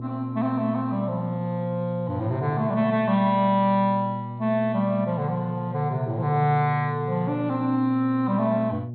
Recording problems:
treble missing; nothing above 4.4 kHz
hum; 60 Hz, harmonics up to 600 Hz, SNR 9 dB

